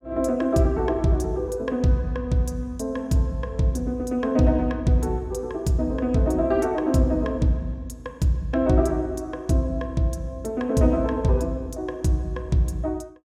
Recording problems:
none

